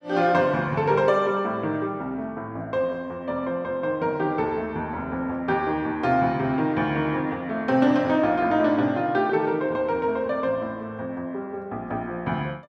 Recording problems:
none

